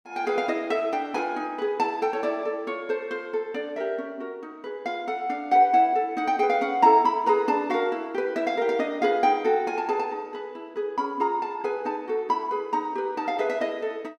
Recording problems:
none

